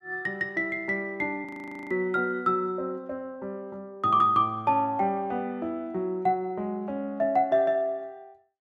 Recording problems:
frozen audio; at 1.5 s

